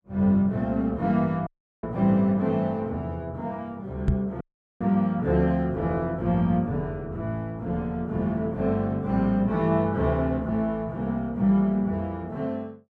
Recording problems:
dropout; at 1.5 s and at 4.5 s
knock on the microphone; at 4 s; peak +7 dB vs average level

